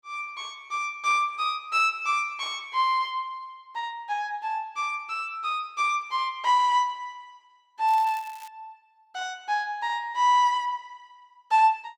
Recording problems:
crackle; at 8 s; loose cable, SNR 23 dB

